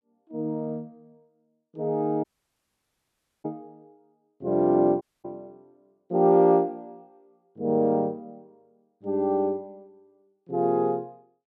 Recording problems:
audio cutting out; at 2 s for 1 s and at 5 s

